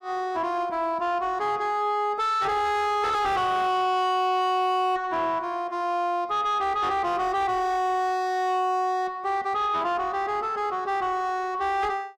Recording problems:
distorted audio; soft clipping, signal-to-distortion ratio 5 dB

